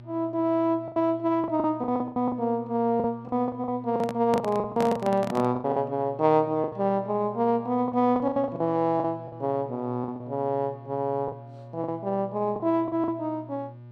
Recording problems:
hum; 60 Hz, harmonics up to 840 Hz, SNR 18 dB
lost packets; 11% of the sound replaced, filled with the last packet
microphone handling noise; from 4 to 5.5 s; peak 0 dB vs average level

